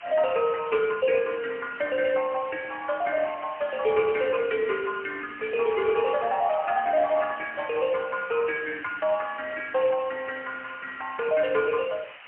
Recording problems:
telephone audio; 320 Hz to 3.1 kHz, AMR-NB, then MP3
hiss; SNR 17 dB

